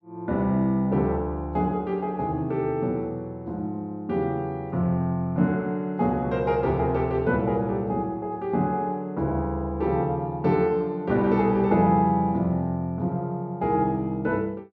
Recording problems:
none

